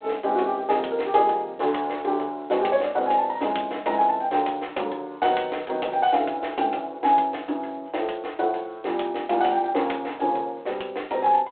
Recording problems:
telephone audio; 320 Hz to 3.7 kHz, G.726

